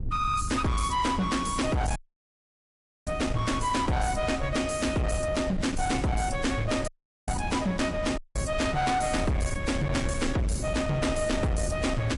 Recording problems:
lossy codec; MP3, log-spectral distance 3 dB, nothing above 11 kHz
distorted audio; hard clipping, uneven, signal-to-distortion ratio 7 dB
low-frequency rumble; below 150 Hz, SNR 8 dB
dropout; at 2 s for 1 s, at 7 s and at 8 s

